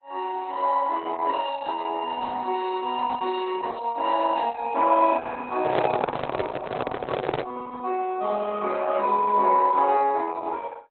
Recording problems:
codec artefacts; Opus, log-spectral distance 4 dB, nothing above 4 kHz
microphone handling noise; from 5.5 to 7.5 s; peak +5 dB vs average level

